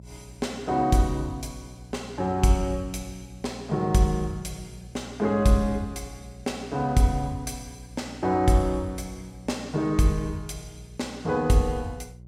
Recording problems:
hum; 60 Hz, harmonics up to 540 Hz, SNR 19 dB

